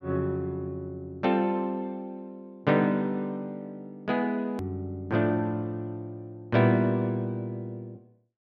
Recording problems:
hard cut with a click; at 4.5 s

